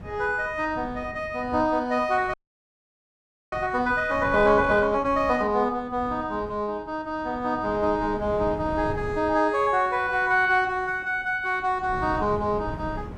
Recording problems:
wind on the microphone; below 270 Hz, SNR 16 dB
frozen audio; at 2.5 s for 1 s

